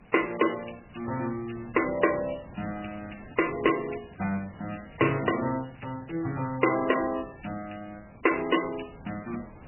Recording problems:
codec artefacts; MP3, log-spectral distance 11 dB, nothing above 2.9 kHz
hiss; SNR 20 dB
crackling; from 2 to 6 s; loose cable, SNR 29 dB

